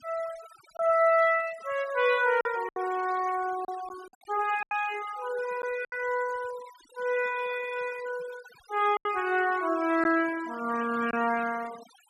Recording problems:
noise reduction artefacts; signal-to-artefact ratio 17 dB
lost packets; 5% of the sound replaced, filled with silence

